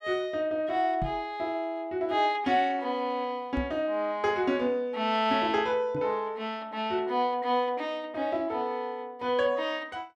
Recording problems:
microphone bump; at 1 s, at 3.5 s and at 6 s; peak -2 dB vs average level

